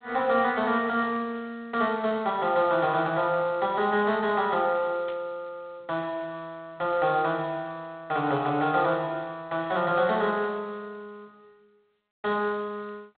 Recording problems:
phone line; 86 Hz to 3.9 kHz, G.726
burst of static; at 5 s; peak -13 dB vs average level

